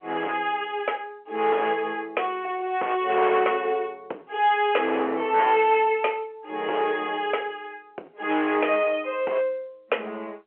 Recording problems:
telephone audio; 340 Hz to 3.2 kHz, G.711
distorted audio; hard clipping, signal-to-distortion ratio 13 dB

